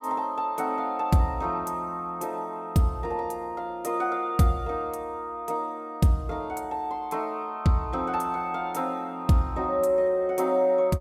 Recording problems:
none

